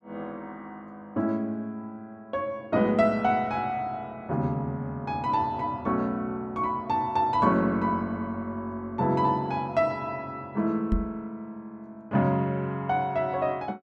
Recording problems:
microphone bump; at 11 s; peak +3 dB vs average level

